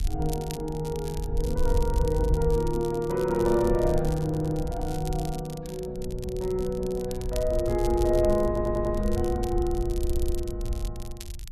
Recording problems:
wind on the microphone; below 68 Hz, SNR 6 dB
crackle; vinyl, SNR 17 dB
stutter; at 4 s, at 8.5 s and at 10 s

